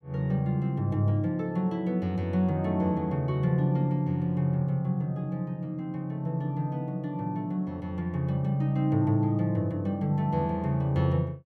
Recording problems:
none

